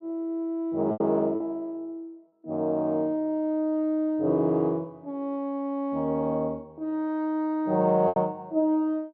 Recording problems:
lost packets; 2% of the sound replaced, filled with repeated pitch periods

